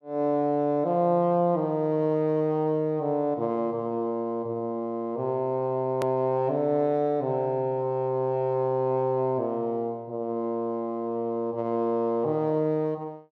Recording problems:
edit click; at 6 s

